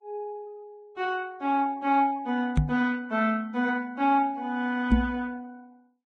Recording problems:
codec artefacts; Vorbis, log-spectral distance 2 dB
knock on the microphone; at 2.5 s and at 5 s; peak +9 dB vs average level

